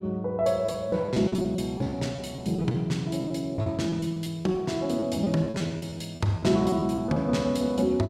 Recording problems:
lost packets; 12% of the sound replaced, filled with repeated pitch periods

